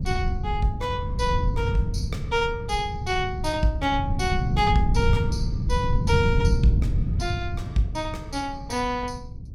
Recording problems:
wind noise; below 130 Hz, SNR 0 dB

